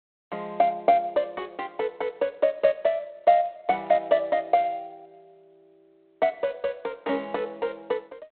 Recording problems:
phone line; 220 Hz to 3.9 kHz, G.726

